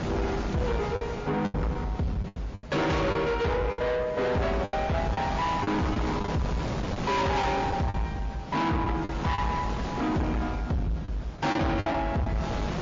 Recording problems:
lossy compression; MP3, then MP3, log-spectral distance 2 dB, nothing above 6.3 kHz
distorted audio; soft clipping, signal-to-distortion ratio 6 dB
wind on the microphone; below 1 kHz, SNR 7 dB
packet loss; 8% of the sound replaced, filled with the last packet

